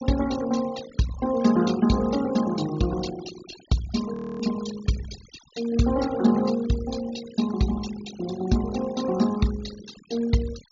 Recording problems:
low-pass filter; nothing above 7.1 kHz
noise reduction artefacts; signal-to-artefact ratio 14 dB
frozen audio; at 4 s

